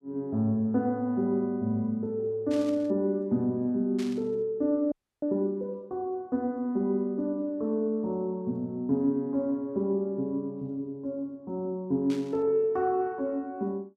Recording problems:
burst of static; at 2.5 s, at 4 s and at 12 s; peak -10 dB vs average level
audio freezing; at 5 s

